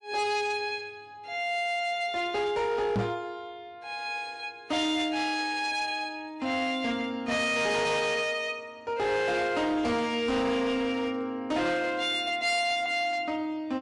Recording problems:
codec artefacts; MP3, log-spectral distance 2 dB
distortion; hard clipping, signal-to-distortion ratio 10 dB
knock on the microphone; at 3 s; peak +3 dB vs average level

